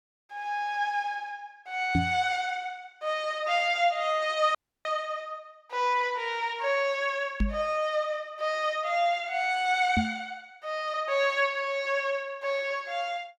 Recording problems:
microphone thump; at 2 s, at 7.5 s and at 10 s; peak +5 dB vs average level
dropout; at 4.5 s

